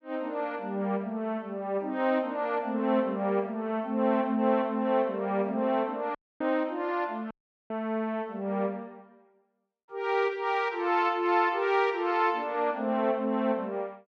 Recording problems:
dropout; at 6 s and at 7.5 s

